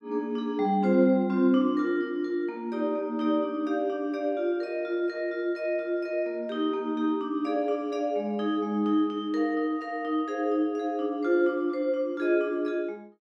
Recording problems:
none

